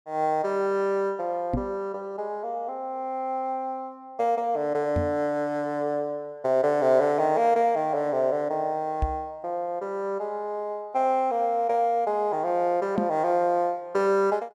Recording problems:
microphone bump; 4 times, first at 1.5 s; peak +3 dB vs average level

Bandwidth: 12.5 kHz